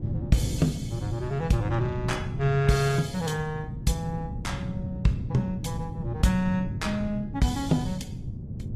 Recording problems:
lossy compression; AAC, log-spectral distance 2 dB, nothing above 13.5 kHz
wind on the microphone; below 180 Hz, SNR 6 dB

